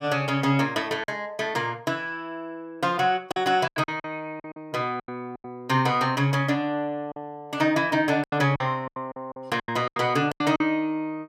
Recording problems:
packet loss; 10% of the sound replaced, filled with silence

